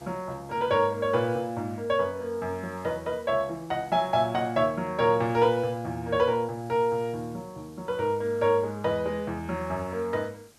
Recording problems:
hiss; SNR 27 dB

